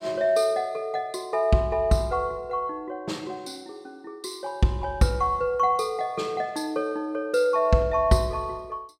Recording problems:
none

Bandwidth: 16 kHz